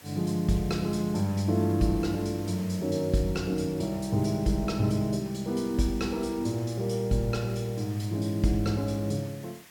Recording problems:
background hiss; SNR 21 dB

